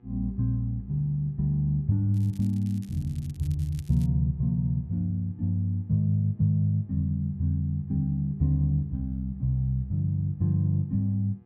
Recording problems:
hum; 60 Hz, harmonics up to 1.3 kHz, SNR 34 dB
crackle; from 2 to 4 s; loose cable, SNR 27 dB

